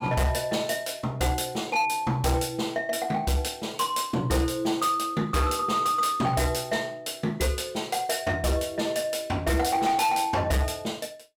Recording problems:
distortion; hard clipping, signal-to-distortion ratio 10 dB

